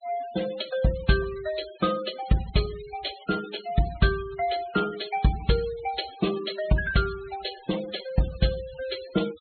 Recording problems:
low-pass filter; nothing above 4.3 kHz
noise reduction artefacts; signal-to-artefact ratio 15 dB

